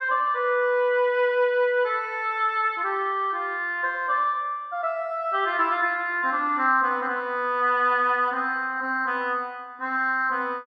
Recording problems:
none

